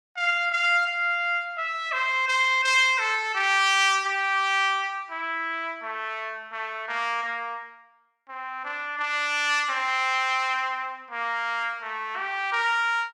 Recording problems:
none

